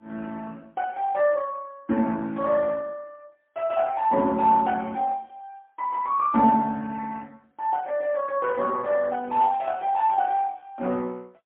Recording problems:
phone line; 190 Hz to 3.6 kHz, AMR-NB, then MP3
static burst; at 4.5 s and at 9.5 s; peak -20 dB vs average level

